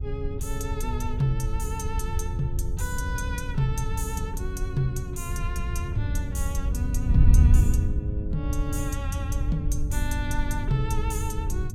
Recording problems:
wind on the microphone; below 84 Hz, SNR -4 dB

